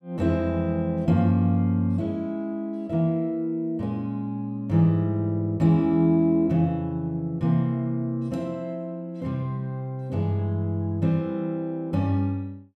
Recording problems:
none

